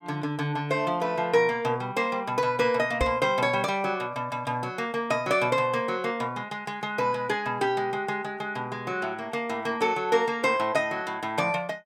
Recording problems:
microphone thump; at 3 s; peak 0 dB vs average level

